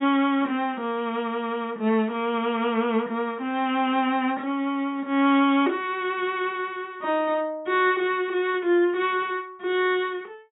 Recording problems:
treble missing; nothing above 4 kHz

